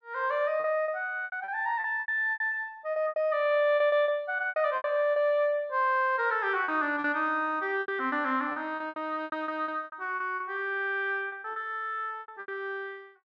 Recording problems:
packet loss; 14% of the sound replaced, filled with repeated pitch periods

